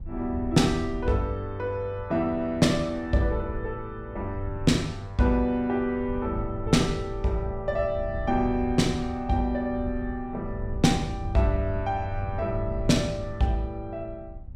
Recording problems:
wind noise; below 92 Hz, SNR 11 dB

